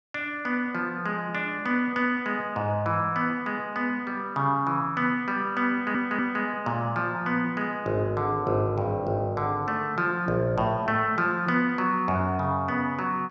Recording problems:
audio stuttering; at 5.5 s

